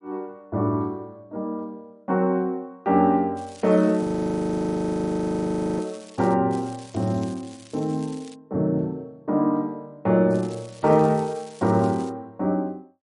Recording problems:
lossy compression; MP3, log-spectral distance 3 dB, nothing above 10.4 kHz
crackle; from 3.5 to 6.5 s, from 6.5 to 8.5 s and from 10 to 12 s; loose cable, SNR 23 dB
audio freezing; at 4 s for 2 s

